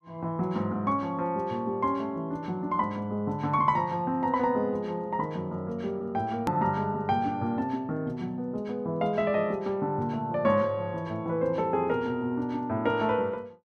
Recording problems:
hard cut with a click; at 6.5 s

